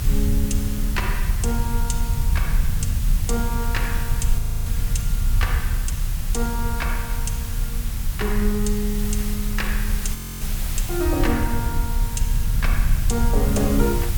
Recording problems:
hiss; slope -1 dB per octave, SNR 5 dB
rumble; below 74 Hz, strongest tone 32 Hz, SNR -3 dB
frozen audio; at 4.5 s and at 10 s

